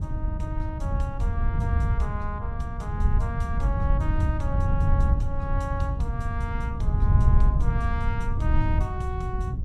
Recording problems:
wind noise; below 96 Hz, SNR -8 dB

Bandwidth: 14.5 kHz